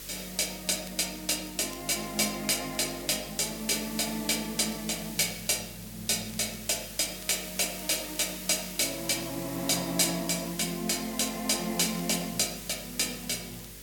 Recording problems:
electrical hum; 50 Hz, harmonics up to 600 Hz, SNR 23 dB
background hiss; slope +2 dB per octave, SNR 12 dB
crackling; vinyl, SNR 27 dB

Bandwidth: 17.5 kHz